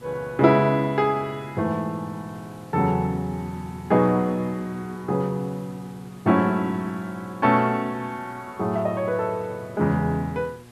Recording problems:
electrical hum; 60 Hz, harmonics up to 1.2 kHz, SNR 23 dB
background hiss; slope -3 dB per octave, SNR 27 dB

